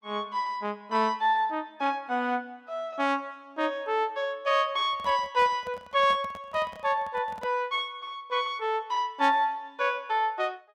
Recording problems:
handling noise; from 5 to 7.5 s; peak -9 dB vs average level

